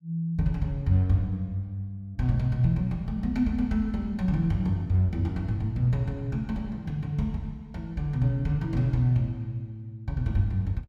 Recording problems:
none

